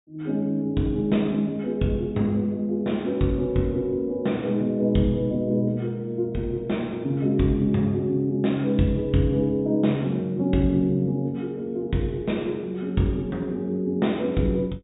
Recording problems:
treble missing; nothing above 4 kHz

